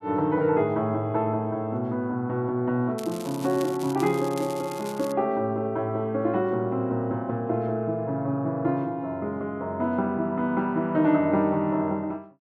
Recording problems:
crackling; from 3 to 5 s; loose cable, SNR 17 dB

